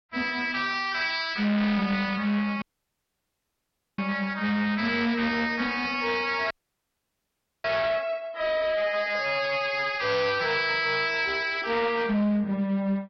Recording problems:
lossy codec; Vorbis, log-spectral distance 5 dB, nothing above 5 kHz
distorted audio; hard clipping, uneven, signal-to-distortion ratio 10 dB
audio cutting out; at 2.5 s for 1.5 s and at 6.5 s for 1 s

